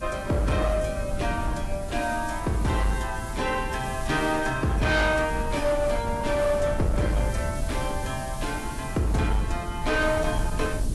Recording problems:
codec artefacts; AAC, log-spectral distance 7 dB
distorted audio; hard clipping, signal-to-distortion ratio 11 dB
hiss; SNR 18 dB
low-frequency rumble; below 110 Hz, SNR 8 dB

